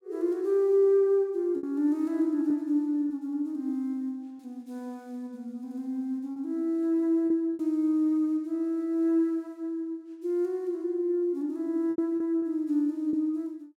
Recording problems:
lost packets; 3% of the sound replaced, filled with repeated pitch periods

